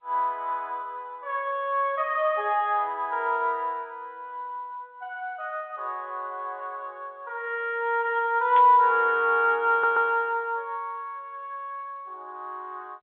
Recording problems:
phone line; 280 Hz to 3.7 kHz, G.711
burst of static; at 8.5 s; peak -8 dB vs average level
audio stuttering; at 9.5 s

